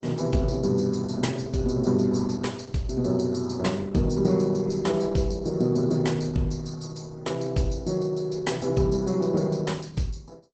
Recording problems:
lossy compression; Opus, log-spectral distance 5 dB, nothing above 8 kHz

